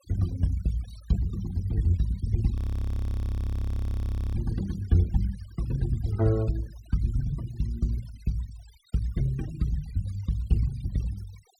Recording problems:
denoising artefacts; signal-to-artefact ratio 18 dB
frozen audio; at 2.5 s for 2 s

